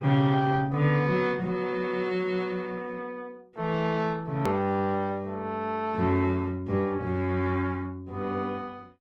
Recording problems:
lossy compression; Opus, log-spectral distance 2 dB, nothing above 17.7 kHz
hard cut with a click; at 4.5 s

